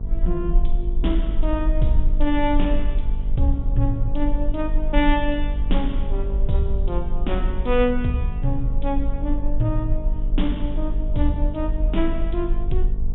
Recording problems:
treble missing; nothing above 3.7 kHz
hum; 50 Hz, harmonics up to 900 Hz, SNR 10 dB
rumble; below 42 Hz, strongest tone 20 Hz, SNR 0 dB

